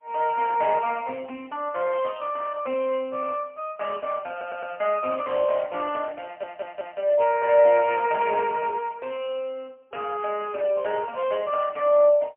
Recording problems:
phone line; 220 Hz to 3 kHz, AMR-NB, then MP3
audio stuttering; at 4.5 s and at 6.5 s

